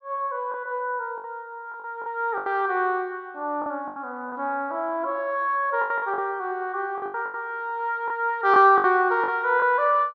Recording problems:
lost packets; 9% of the sound replaced, filled with the last packet

